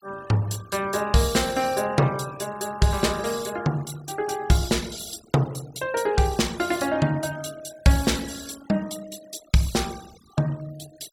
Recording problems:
denoising artefacts; signal-to-artefact ratio 18 dB

